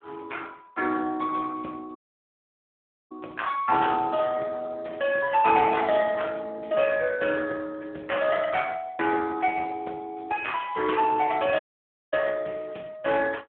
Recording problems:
phone line; 260 Hz to 3 kHz, Speex
audio cutting out; at 2 s for 1 s and at 12 s for 0.5 s

